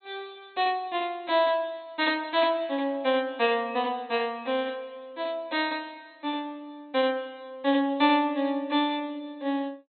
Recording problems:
treble missing; nothing above 4.2 kHz

